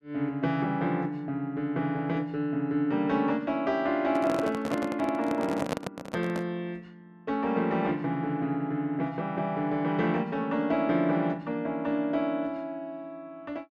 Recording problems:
microphone handling noise; from 4 to 6.5 s; peak +3 dB vs average level

